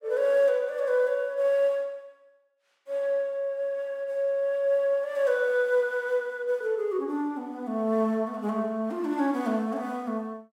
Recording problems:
none

